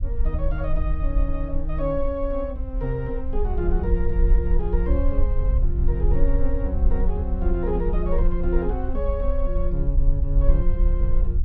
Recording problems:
low-frequency rumble; below 52 Hz, strongest tone 24 Hz, SNR -4 dB

